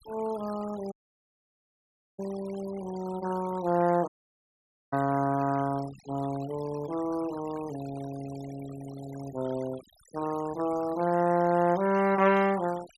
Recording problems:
denoising artefacts; signal-to-artefact ratio 18 dB
audio cutting out; at 1 s for 1.5 s and at 4 s for 1 s

